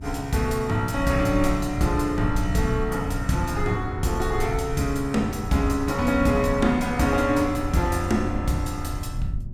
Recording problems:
hum; 60 Hz, harmonics up to 600 Hz, SNR 19 dB
low-frequency rumble; below 94 Hz, SNR 10 dB

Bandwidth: 17 kHz